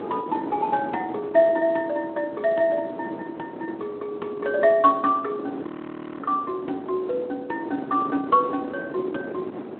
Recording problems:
phone line; 240 Hz to 3.4 kHz, Speex
wind on the microphone; below 540 Hz, SNR 11 dB
audio freezing; at 5.5 s for 0.5 s

